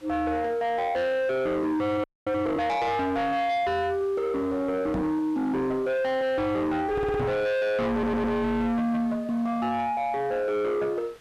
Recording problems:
distorted audio; soft clipping, signal-to-distortion ratio 7 dB
hiss; SNR 27 dB
frozen audio; at 2 s
microphone bump; at 5 s and at 7 s; peak +2 dB vs average level
audio stuttering; at 7 s and at 8 s

